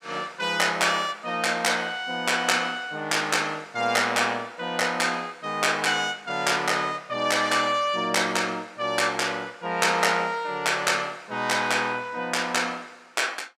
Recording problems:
none

